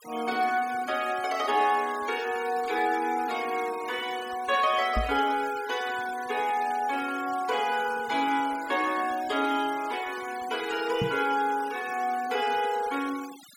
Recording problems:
denoising artefacts; signal-to-artefact ratio 16 dB
microphone thump; at 5 s and at 11 s; peak +1 dB vs average level

